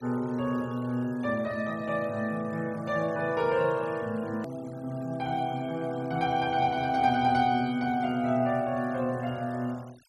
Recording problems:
noise reduction artefacts; signal-to-artefact ratio 25 dB
edit click; at 4.5 s

